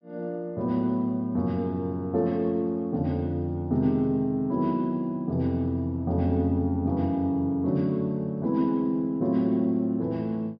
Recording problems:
low-pass filter; nothing above 5.9 kHz

